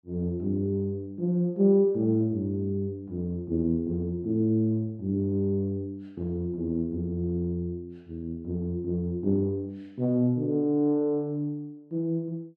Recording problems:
none

